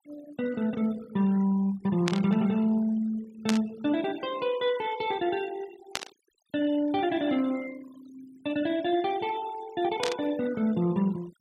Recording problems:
noise reduction artefacts; signal-to-artefact ratio 19 dB
static burst; 4 times, first at 2 s; peak +2 dB vs average level

